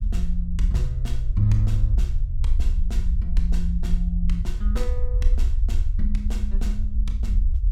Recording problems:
low-frequency rumble; below 56 Hz, SNR -5 dB

